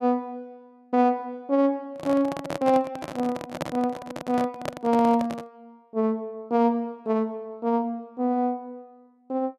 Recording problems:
handling noise; from 2 to 5.5 s; peak 0 dB vs average level

